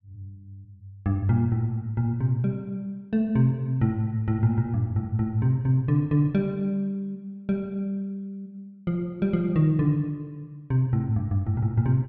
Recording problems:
none

